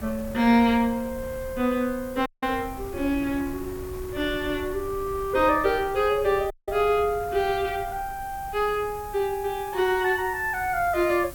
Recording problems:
background hiss; SNR 21 dB
wind noise; below 150 Hz, SNR 18 dB
dropout; at 2.5 s and at 6.5 s

